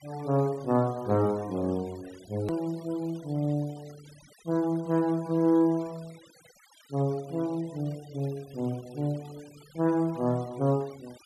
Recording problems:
denoising artefacts; signal-to-artefact ratio 23 dB
hard cut with a click; at 2.5 s

